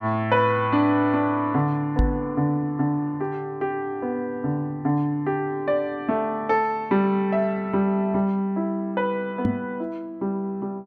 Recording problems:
knock on the microphone; at 2 s and at 9.5 s; peak +6 dB vs average level

